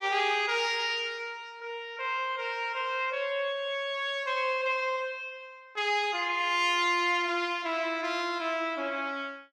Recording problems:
none

